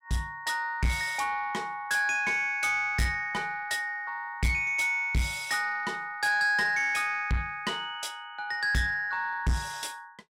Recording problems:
distortion; soft clipping, signal-to-distortion ratio 10 dB

